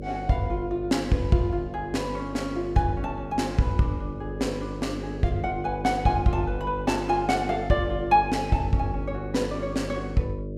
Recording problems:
electrical hum; 50 Hz, harmonics up to 600 Hz, SNR 9 dB

